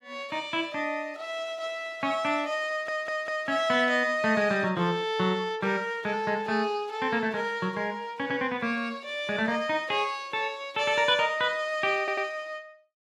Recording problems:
stutter; at 2.5 s and at 12 s

